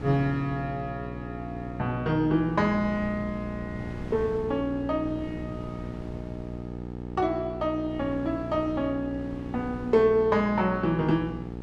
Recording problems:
electrical hum; 60 Hz, harmonics up to 960 Hz, SNR 10 dB
wind on the microphone; below 290 Hz, SNR 18 dB

